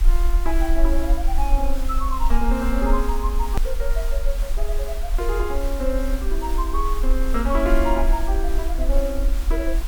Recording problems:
background hiss; SNR 12 dB
rumble; below 42 Hz, strongest tone 18 Hz, SNR -2 dB
click at an edit; at 3.5 s

